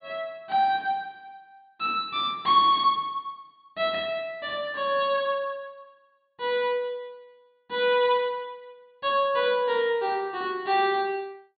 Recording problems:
treble cut off; nothing above 4.5 kHz

